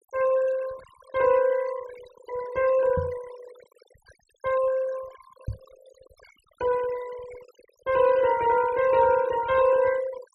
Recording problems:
noise reduction artefacts; signal-to-artefact ratio 18 dB
knock on the microphone; at 3 s and at 5.5 s; peak -4 dB vs average level

